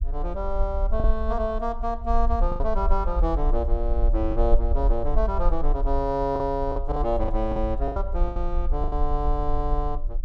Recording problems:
rumble; below 46 Hz, SNR 0 dB
lost packets; 6% of the sound replaced, filled with the last packet

